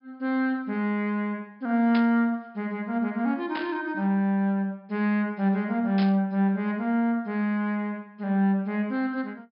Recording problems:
treble missing; nothing above 5.5 kHz
burst of static; at 2 s, at 3.5 s and at 6 s; peak -5 dB vs average level

